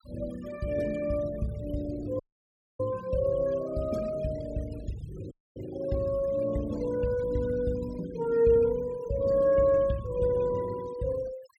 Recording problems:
denoising artefacts; signal-to-artefact ratio 18 dB
audio cutting out; at 2 s for 0.5 s and at 5.5 s

